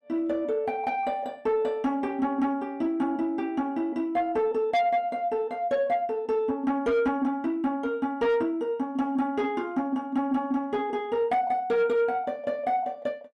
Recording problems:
distorted audio; soft clipping, signal-to-distortion ratio 11 dB

